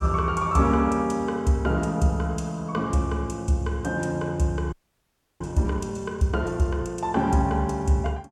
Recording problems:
audio freezing; at 4.5 s for 0.5 s

